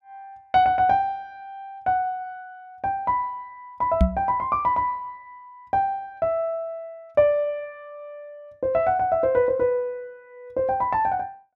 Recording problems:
microphone thump; at 4 s; peak +8 dB vs average level

